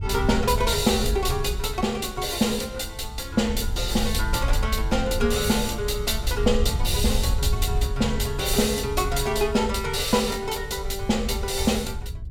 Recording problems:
wind noise; below 76 Hz, SNR 6 dB

